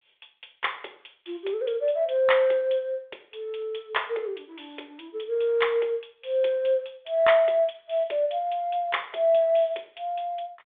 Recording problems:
telephone audio; 340 Hz to 3.6 kHz, G.726

